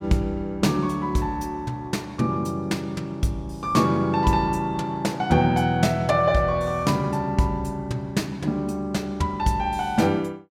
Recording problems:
none

